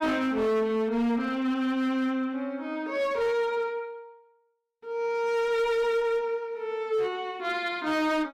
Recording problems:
distorted audio; hard clipping, signal-to-distortion ratio 11 dB

